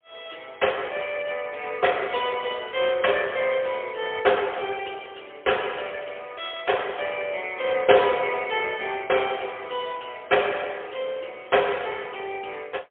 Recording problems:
telephone audio; 340 Hz to 3.4 kHz, AMR-NB, then MP3

